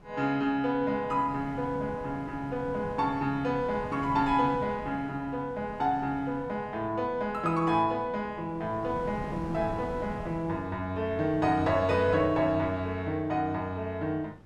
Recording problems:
wind on the microphone; below 410 Hz, SNR 14 dB

